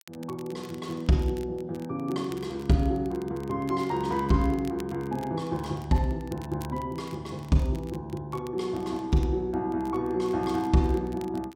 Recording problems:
crackling; vinyl, SNR 24 dB

